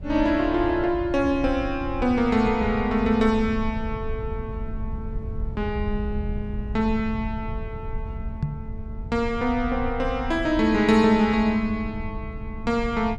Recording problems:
rumble; below 94 Hz, SNR 10 dB
microphone bump; at 8.5 s; peak +1 dB vs average level

